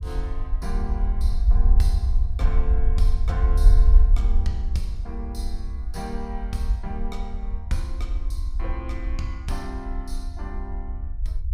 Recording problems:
low-frequency rumble; below 58 Hz, SNR -10 dB

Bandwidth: 15.5 kHz